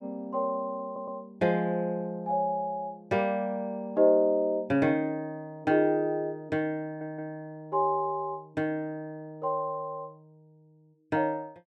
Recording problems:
audio stuttering; at 1 s and at 7 s

